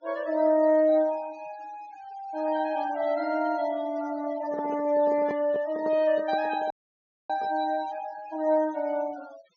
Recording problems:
treble cut off; nothing above 6.8 kHz
denoising artefacts; signal-to-artefact ratio 21 dB
microphone handling noise; from 4.5 to 7.5 s; peak -6 dB vs average level
audio cutting out; at 6.5 s for 0.5 s

